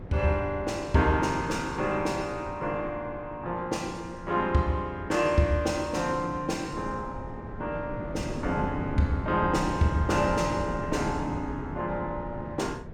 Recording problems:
wind noise; below 330 Hz, SNR 10 dB

